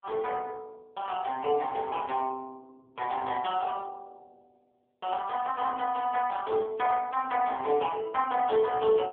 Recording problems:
phone line; 280 Hz to 3.5 kHz, AMR-NB

